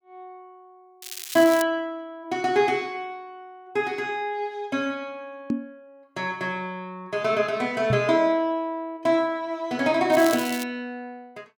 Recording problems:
crackling; at 1 s and at 10 s; loose cable, SNR 11 dB
microphone thump; at 5.5 s and at 8 s; peak +2 dB vs average level

